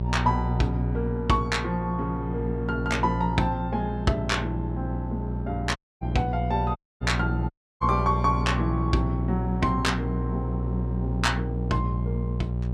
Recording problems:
mains hum; 60 Hz, harmonics up to 600 Hz, SNR 1 dB
audio cutting out; at 6 s, at 7 s and at 7.5 s

